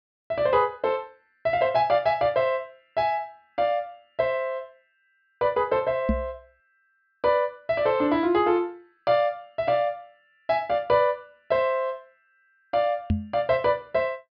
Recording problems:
low-pass filter; nothing above 5.5 kHz
microphone thump; at 6 s and at 13 s; peak +5 dB vs average level

